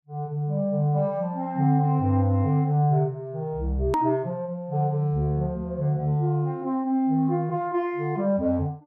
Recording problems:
edit click; at 4 s

